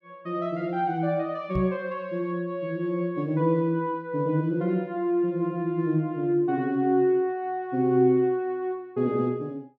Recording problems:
microphone bump; at 1.5 s; peak -1 dB vs average level

